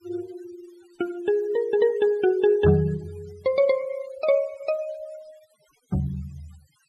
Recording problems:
noise reduction artefacts; signal-to-artefact ratio 25 dB

